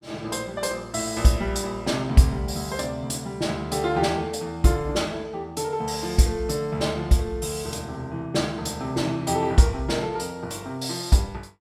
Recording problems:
none

